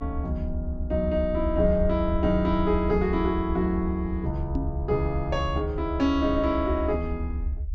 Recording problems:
treble cut off; nothing above 8 kHz
low-frequency rumble; below 74 Hz, SNR 6 dB
microphone thump; at 4.5 s; peak +1 dB vs average level

